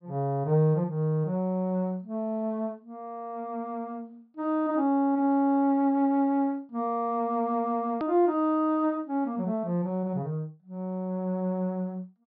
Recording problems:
low-pass filter; nothing above 5.5 kHz
edit click; at 8 s

